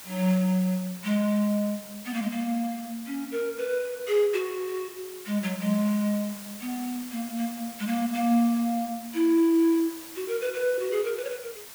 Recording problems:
background hiss; slope -1 dB per octave, SNR 15 dB

